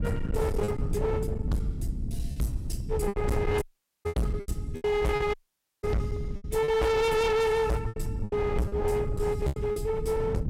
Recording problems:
distorted audio; hard clipping, signal-to-distortion ratio 6 dB
rumble; below 170 Hz, SNR 5 dB
packet loss; 8% of the sound replaced, filled with repeated pitch periods
audio cutting out; at 3.5 s and at 5.5 s

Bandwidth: 16.5 kHz